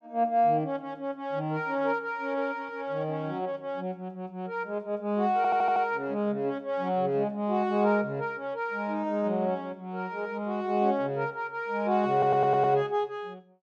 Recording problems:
stutter; at 5.5 s and at 12 s

